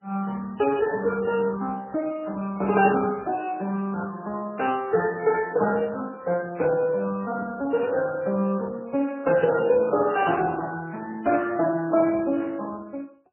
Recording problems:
lossy compression; Speex, then MP3, log-spectral distance 4 dB, nothing above 2.7 kHz

